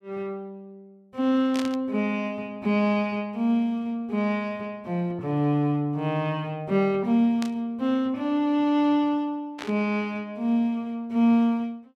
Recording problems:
static burst; at 1.5 s, at 7.5 s and at 9.5 s; peak -5 dB vs average level

